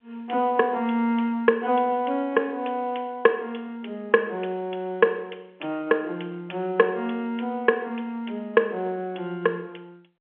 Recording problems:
phone line; 260 Hz to 3.3 kHz, G.711

